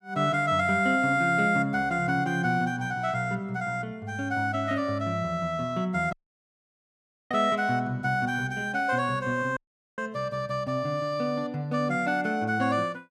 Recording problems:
audio cutting out; at 6 s for 1 s and at 9.5 s

